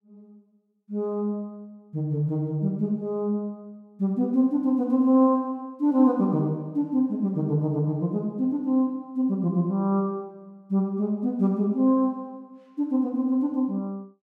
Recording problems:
none

